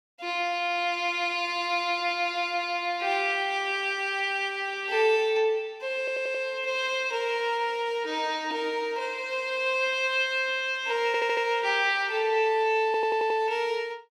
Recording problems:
stutter; at 6 s, at 11 s and at 13 s

